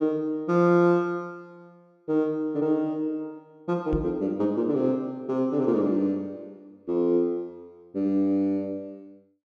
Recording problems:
microphone thump; at 4 s; peak 0 dB vs average level

